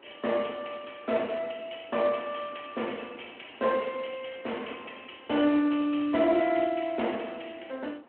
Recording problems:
phone line; 260 Hz to 3.3 kHz, Speex
wind on the microphone; below 1 kHz, SNR 24 dB

